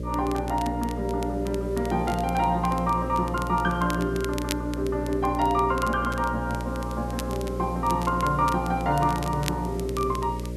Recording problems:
electrical hum; 60 Hz, harmonics up to 600 Hz, SNR 6 dB
hiss; SNR 26 dB
crackle; vinyl, SNR 16 dB

